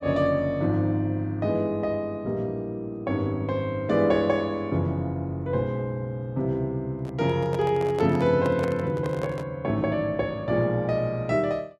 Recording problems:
handling noise; from 7 to 9.5 s; peak -4 dB vs average level

